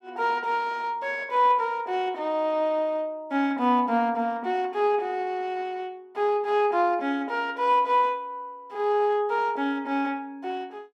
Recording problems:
none

